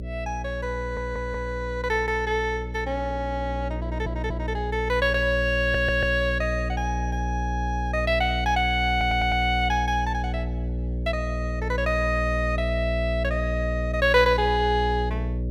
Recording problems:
electrical hum; 60 Hz, harmonics up to 600 Hz, SNR 4 dB
stutter; 4 times, first at 1 s

